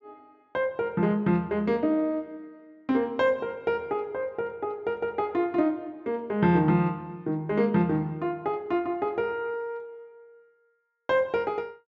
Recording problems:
treble cut off; nothing above 7.3 kHz

